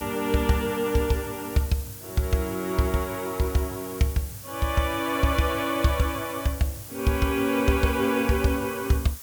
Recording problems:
hiss; slope 0 dB per octave, SNR 13 dB

